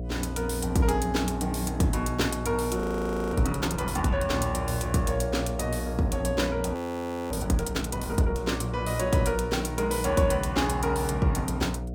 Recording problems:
mains hum; 60 Hz, harmonics up to 720 Hz, SNR 7 dB
audio freezing; at 3 s for 0.5 s and at 7 s for 0.5 s

